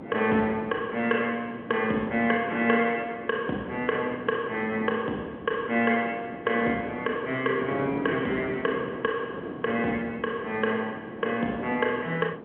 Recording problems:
phone line; 190 Hz to 3.6 kHz, G.711
wind noise; below 540 Hz, SNR 12 dB

